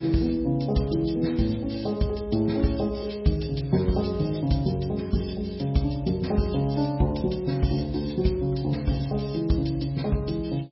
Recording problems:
codec artefacts; MP3, log-spectral distance 5 dB, nothing above 5.5 kHz

